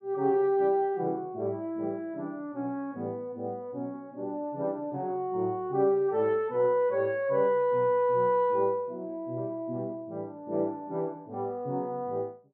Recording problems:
treble cut off; nothing above 5.5 kHz

